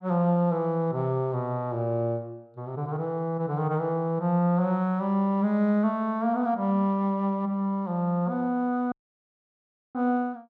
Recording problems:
audio cutting out; at 9 s for 1 s

